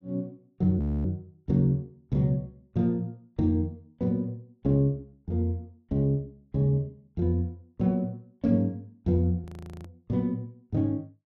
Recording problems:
frozen audio; at 1 s and at 9.5 s

